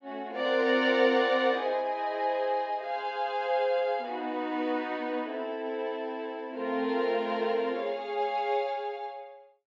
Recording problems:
treble missing; nothing above 8 kHz

